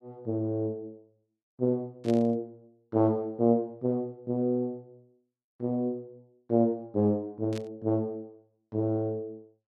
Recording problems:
burst of static; at 2 s and at 7.5 s; peak -10 dB vs average level

